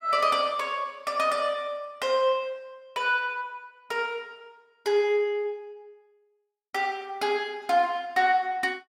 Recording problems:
none

